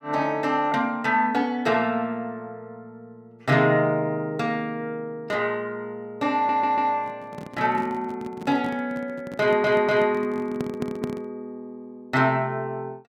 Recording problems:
audio stuttering; at 6.5 s, at 9.5 s and at 11 s
microphone handling noise; from 7 to 11 s; peak -3 dB vs average level

